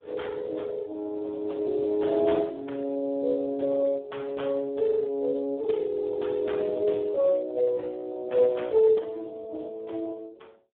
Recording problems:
phone line; 300 Hz to 3.9 kHz, Speex

